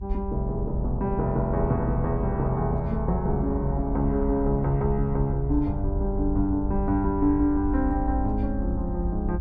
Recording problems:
rumble; below 62 Hz, SNR 5 dB

